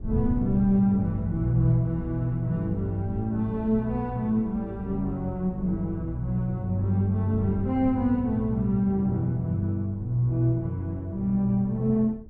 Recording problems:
wind on the microphone; below 110 Hz, SNR 16 dB

